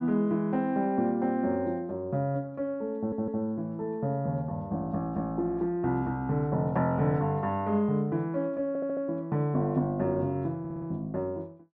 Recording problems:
audio stuttering; at 3 s, at 8.5 s and at 11 s

